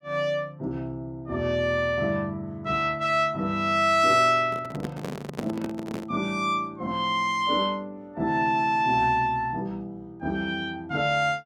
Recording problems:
microphone handling noise; from 4.5 to 6 s; peak -2 dB vs average level

